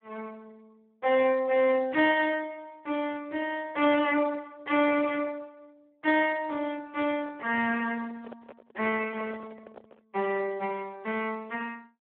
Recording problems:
phone line; 260 Hz to 3.4 kHz, Speex
handling noise; from 7 to 10 s; peak -12 dB vs average level

